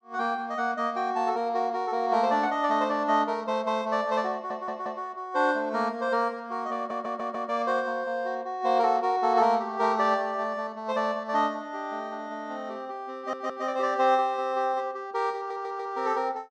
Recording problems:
audio stuttering; 4 times, first at 4.5 s

